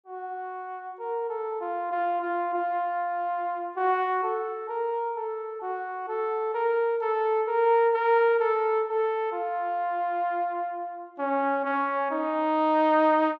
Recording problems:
low-pass filter; nothing above 8 kHz

